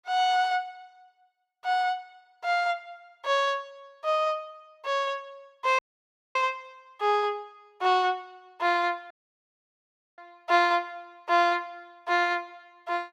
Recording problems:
audio cutting out; at 6 s for 0.5 s and at 9 s for 1 s

